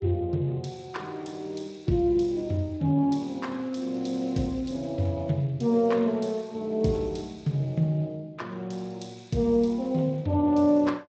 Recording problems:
codec artefacts; Speex, log-spectral distance 3 dB, nothing above 7.3 kHz

